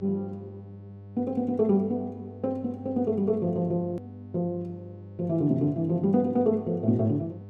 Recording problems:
hum; 50 Hz, harmonics up to 700 Hz, SNR 17 dB
edit click; at 4 s

